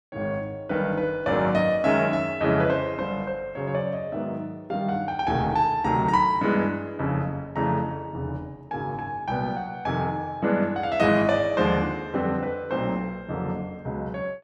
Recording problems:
none

